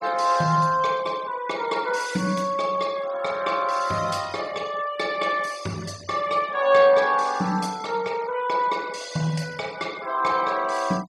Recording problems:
noise reduction artefacts; signal-to-artefact ratio 21 dB

